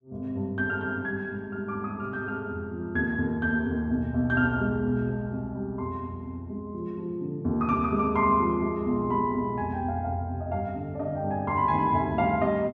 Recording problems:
none

